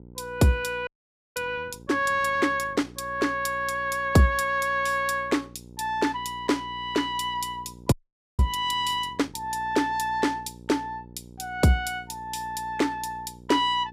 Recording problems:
hum; 60 Hz, harmonics up to 900 Hz, SNR 21 dB
audio freezing; at 1 s and at 8 s

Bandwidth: 15.5 kHz